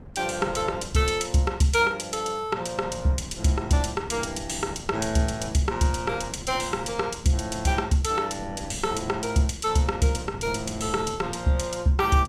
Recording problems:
wind noise; below 270 Hz, SNR 15 dB

